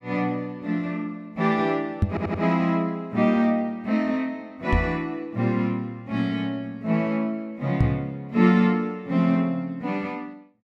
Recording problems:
microphone thump; at 2 s, at 4.5 s and at 8 s; peak +7 dB vs average level
stutter; at 2 s

